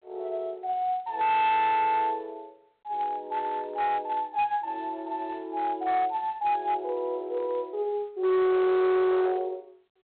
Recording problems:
phone line; 990 Hz to 2.6 kHz, G.726
distorted audio; hard clipping, signal-to-distortion ratio 11 dB

